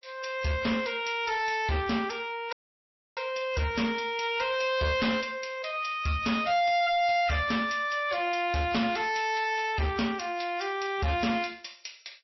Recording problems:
lossy compression; MP3, log-spectral distance 5 dB, nothing above 5.7 kHz
distortion; hard clipping, signal-to-distortion ratio 11 dB
audio cutting out; at 2.5 s for 0.5 s

